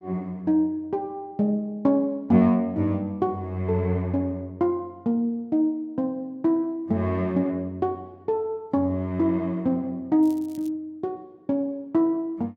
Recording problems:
crackling; at 10 s; loose cable, SNR 27 dB

